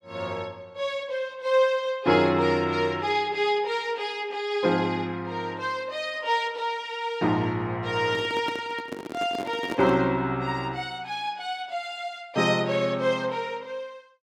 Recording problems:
handling noise; from 8 to 10 s; peak -1 dB vs average level

